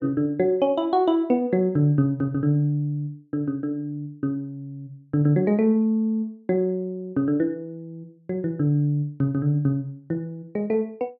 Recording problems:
none

